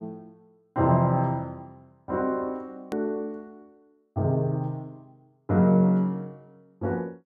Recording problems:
edit click; at 3 s

